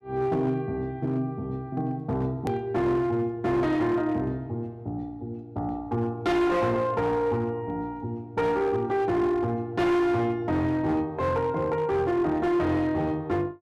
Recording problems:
distorted audio; hard clipping, signal-to-distortion ratio 10 dB
edit click; at 2.5 s

